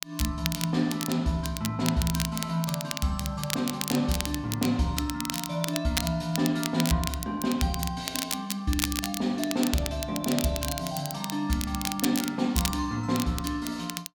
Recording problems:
crackle; vinyl, SNR 5 dB

